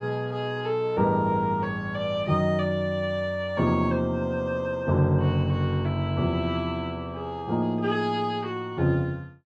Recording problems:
none

